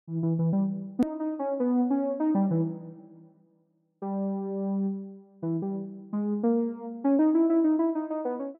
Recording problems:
edit click; at 1 s

